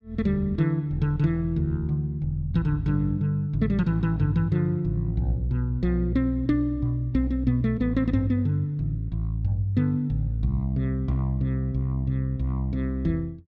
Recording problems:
none

